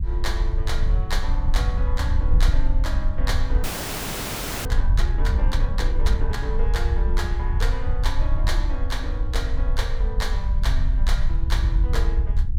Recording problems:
wind noise; below 56 Hz, SNR -8 dB
frozen audio; at 3.5 s for 1 s

